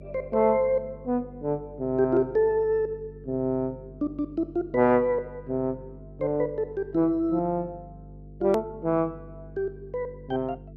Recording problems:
electrical hum; 50 Hz, harmonics up to 450 Hz, SNR 19 dB
click at an edit; at 8.5 s

